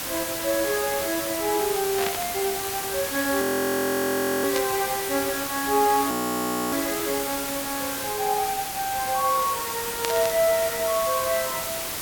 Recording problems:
background hiss; slope -1 dB per octave, SNR 3 dB
burst of static; at 2 s, at 4.5 s and at 10 s; peak +2 dB vs average level
audio freezing; at 3.5 s for 1 s and at 6 s for 0.5 s

